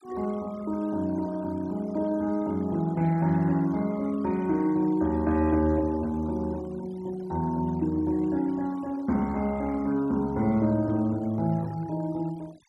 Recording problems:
denoising artefacts; signal-to-artefact ratio 24 dB

